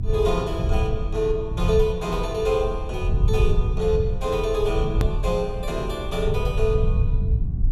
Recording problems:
electrical hum; 50 Hz, harmonics up to 1.2 kHz, SNR 24 dB
rumble; below 96 Hz, SNR 1 dB
hard cut with a click; at 5 s

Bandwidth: 14.5 kHz